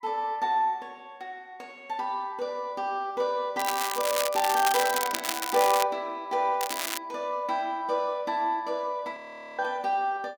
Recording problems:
crackle; from 3.5 to 6 s and at 6.5 s; loose cable, SNR 3 dB
frozen audio; at 9 s

